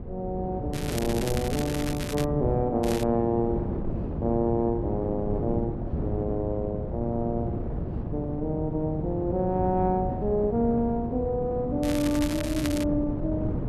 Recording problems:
wind on the microphone; below 280 Hz, SNR 5 dB
crackling; from 0.5 to 2 s, at 3 s and from 12 to 13 s; loose cable, SNR 10 dB

